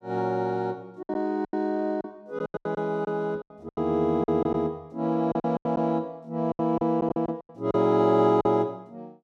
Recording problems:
lost packets; 12% of the sound replaced, filled with silence

